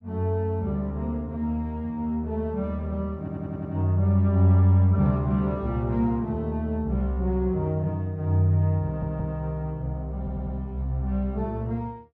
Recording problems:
audio stuttering; at 3 s, at 9 s and at 10 s

